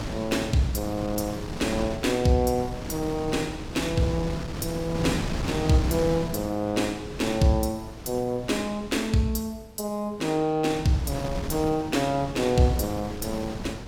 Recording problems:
wind on the microphone; below 540 Hz, SNR 8 dB

